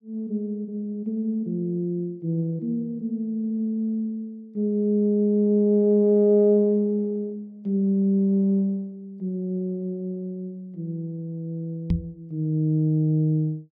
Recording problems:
knock on the microphone; at 12 s; peak +3 dB vs average level

